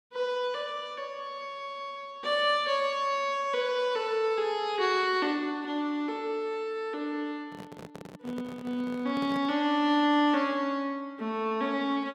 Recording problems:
microphone handling noise; from 7.5 to 9.5 s; peak -8 dB vs average level

